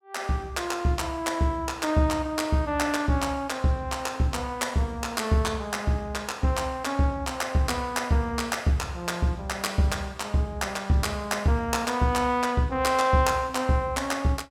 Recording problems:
none

